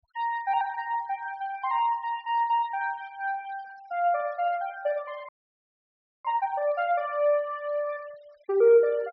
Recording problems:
treble cut off; nothing above 5.5 kHz
denoising artefacts; signal-to-artefact ratio 26 dB
frozen audio; at 5.5 s for 1 s

